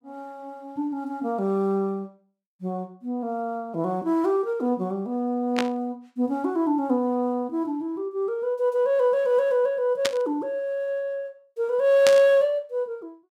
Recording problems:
static burst; at 5.5 s, at 10 s and at 12 s; peak +4 dB vs average level

